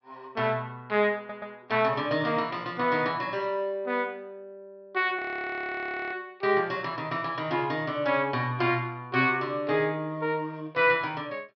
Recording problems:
treble missing; nothing above 5.5 kHz
stutter; at 1 s
audio freezing; at 5 s for 1 s

